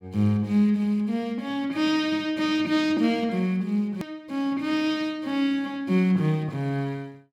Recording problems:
click at an edit; at 4 s

